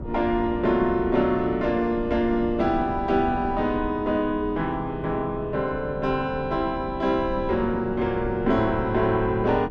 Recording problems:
wind on the microphone; below 280 Hz, SNR 12 dB

